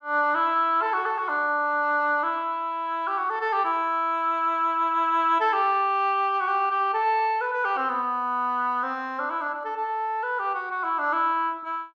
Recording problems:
none

